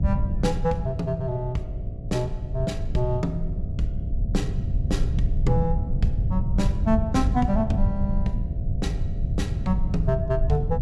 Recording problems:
hum; 60 Hz, harmonics up to 720 Hz, SNR 18 dB
low-frequency rumble; below 100 Hz, SNR 0 dB

